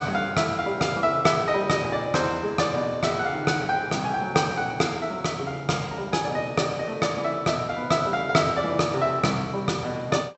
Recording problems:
low-pass filter; nothing above 7.9 kHz

